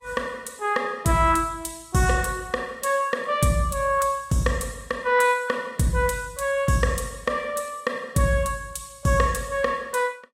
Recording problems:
lossy compression; Vorbis, log-spectral distance 3 dB, nothing above 16 kHz

